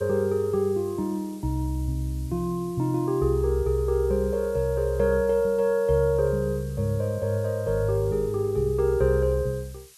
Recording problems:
background hiss; slope +4 dB per octave, SNR 25 dB

